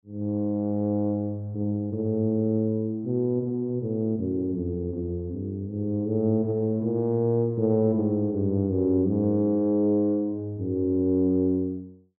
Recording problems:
none

